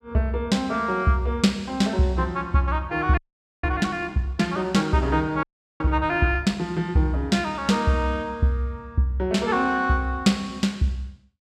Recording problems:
frozen audio; at 3 s and at 5.5 s

